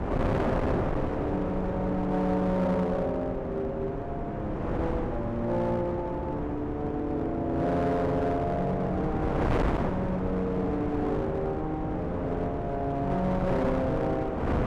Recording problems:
distortion; hard clipping, uneven, signal-to-distortion ratio 12 dB
wind noise; below 610 Hz, SNR 3 dB

